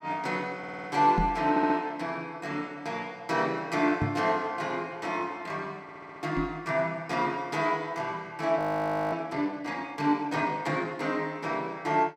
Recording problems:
stutter; at 0.5 s, at 1.5 s and at 6 s
knock on the microphone; at 1 s, at 4 s and at 6.5 s; peak +4 dB vs average level
frozen audio; at 8.5 s for 0.5 s

